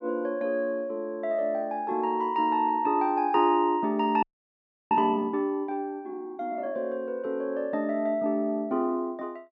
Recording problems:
audio freezing; at 4 s for 0.5 s

